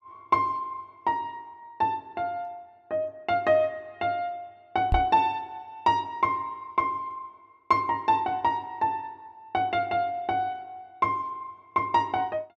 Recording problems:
microphone thump; at 5 s; peak +5 dB vs average level

